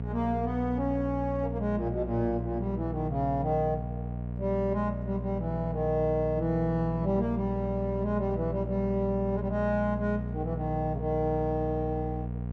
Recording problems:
electrical hum; 60 Hz, harmonics up to 720 Hz, SNR 5 dB

